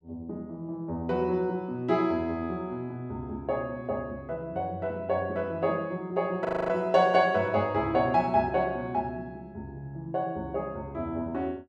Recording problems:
audio freezing; at 6.5 s

